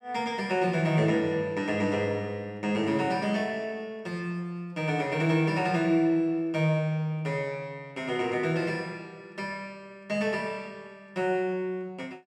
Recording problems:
none

